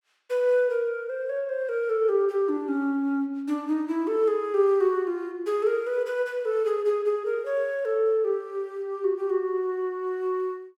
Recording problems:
none

